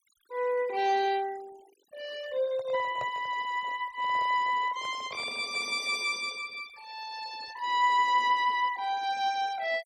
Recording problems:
denoising artefacts; signal-to-artefact ratio 22 dB
handling noise; from 2.5 to 6 s; peak -7 dB vs average level

